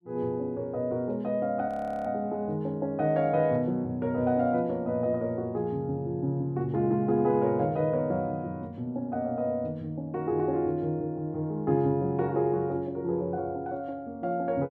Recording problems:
frozen audio; at 1.5 s

